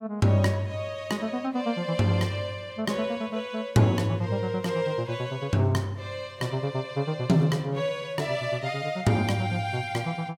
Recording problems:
none

